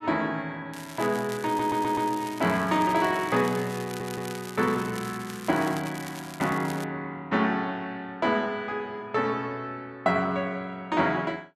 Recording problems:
crackling; from 0.5 to 7 s; loose cable, SNR 15 dB
audio stuttering; at 1.5 s and at 4 s

